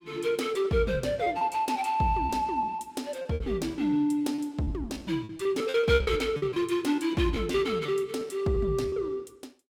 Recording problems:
packet loss; 13% of the sound replaced, filled with repeated pitch periods

